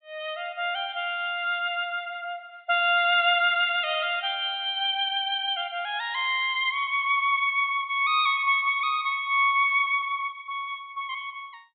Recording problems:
treble cut off; nothing above 4 kHz

